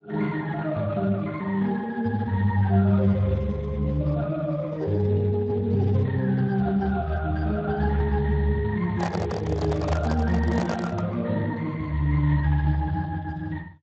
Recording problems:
codec artefacts; Speex, log-spectral distance 3 dB
microphone handling noise; from 9 to 11 s; peak -1 dB vs average level

